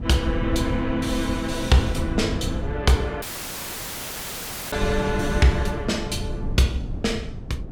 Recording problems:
wind noise; below 170 Hz, SNR 6 dB
audio cutting out; at 3 s for 1.5 s; filled with static

